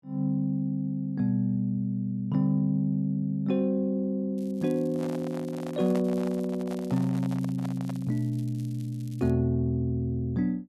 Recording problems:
crackle; from 4.5 to 9.5 s; loose cable, SNR 27 dB
microphone handling noise; from 5 to 8 s; peak -6 dB vs average level

